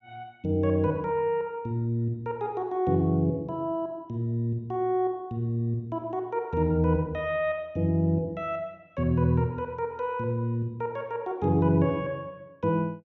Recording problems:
none

